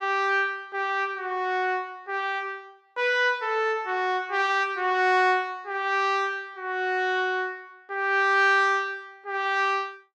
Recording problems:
none

